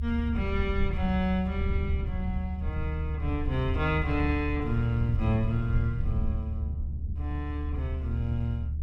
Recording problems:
low-frequency rumble; below 76 Hz, strongest tone 74 Hz, SNR 1 dB

